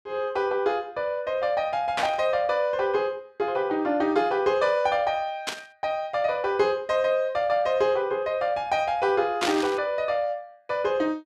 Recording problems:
burst of static; at 2 s, at 5.5 s and at 9.5 s; peak +1 dB vs average level

